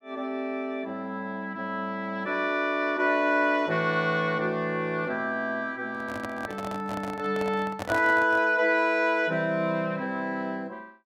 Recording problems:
microphone handling noise; from 6 to 8.5 s; peak -1 dB vs average level

